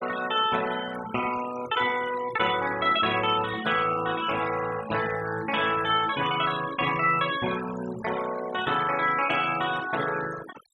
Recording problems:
denoising artefacts; signal-to-artefact ratio 11 dB

